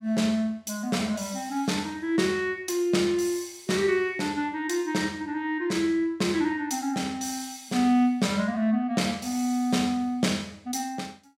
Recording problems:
none

